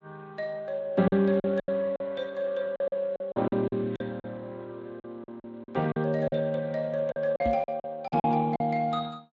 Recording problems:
lossy codec; MP3, then Speex, log-spectral distance 2 dB
lost packets; 11% of the sound replaced, filled with silence
microphone thump; at 7.5 s; peak -1 dB vs average level

